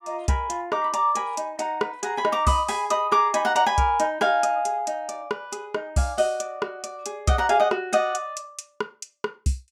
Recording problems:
none

